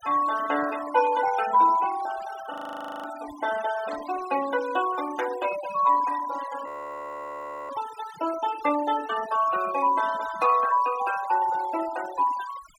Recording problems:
denoising artefacts; signal-to-artefact ratio 14 dB
static burst; at 1 s, at 4 s and at 8 s; peak -22 dB vs average level
audio freezing; at 2.5 s for 0.5 s and at 6.5 s for 1 s

